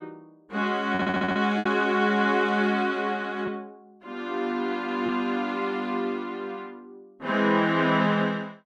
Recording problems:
lost packets; 1.9% of the sound replaced, filled with repeated pitch periods
stutter; at 1 s

